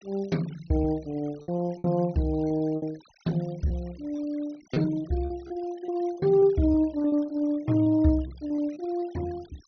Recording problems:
low-pass filter; nothing above 6.2 kHz
denoising artefacts; signal-to-artefact ratio 25 dB
lost packets; 9% of the sound replaced, filled with repeated pitch periods

